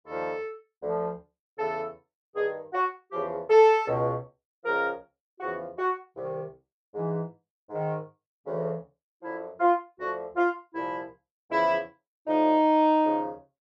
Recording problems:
none

